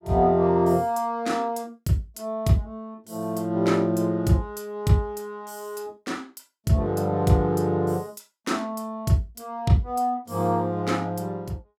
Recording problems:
none

